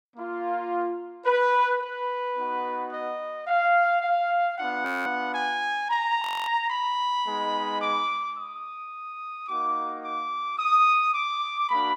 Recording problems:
frozen audio; at 5 s and at 6 s

